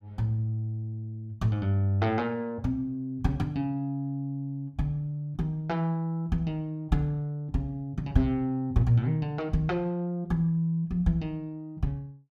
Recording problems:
none

